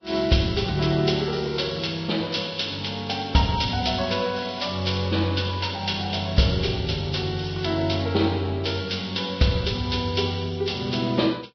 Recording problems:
codec artefacts; Vorbis, log-spectral distance 9 dB, nothing above 5.5 kHz

